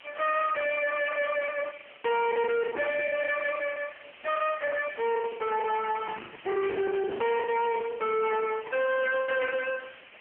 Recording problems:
phone line; 220 Hz to 3.1 kHz, AMR-NB
distortion; hard clipping, signal-to-distortion ratio 6 dB
hiss; SNR 20 dB
packet loss; 16% of the sound replaced, filled with the last packet
microphone handling noise; from 6 to 7.5 s; peak -8 dB vs average level

